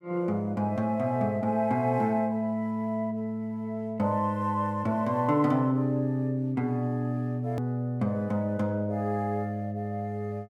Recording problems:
hard cut with a click; at 7.5 s

